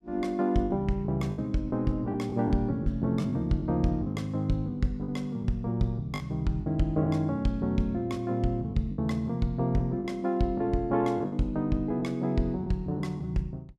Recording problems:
packet loss; 6% of the sound replaced, filled with the last packet

